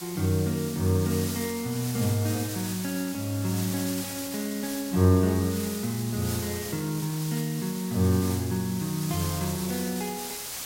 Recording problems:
background hiss; slope 0 dB per octave, SNR 8 dB

